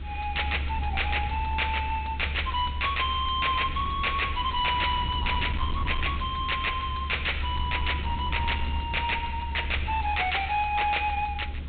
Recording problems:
low-pass filter; nothing above 4 kHz
distortion; hard clipping, signal-to-distortion ratio 9 dB
hiss; SNR 21 dB
rumble; below 74 Hz, strongest tone 70 Hz, SNR 6 dB

